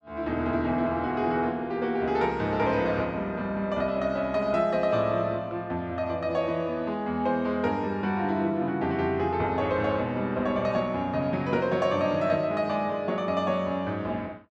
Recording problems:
none

